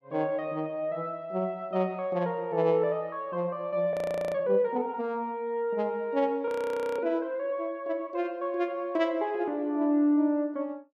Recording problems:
audio freezing; at 4 s and at 6.5 s for 0.5 s

